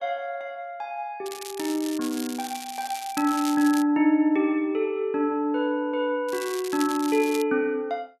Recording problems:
crackling; from 1.5 to 4 s and from 6.5 to 7.5 s; loose cable, SNR 12 dB

